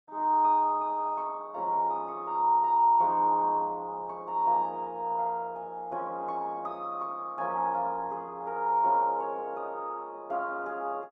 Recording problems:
lossy compression; Opus, log-spectral distance 2 dB

